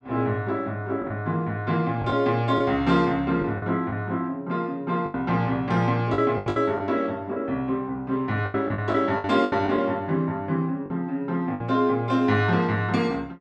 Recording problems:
packet loss; 7% of the sound replaced, filled with the last packet

